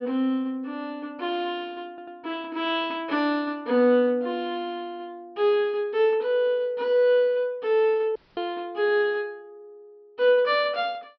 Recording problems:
low-pass filter; nothing above 5.5 kHz
stutter; at 2 s
dropout; at 8 s

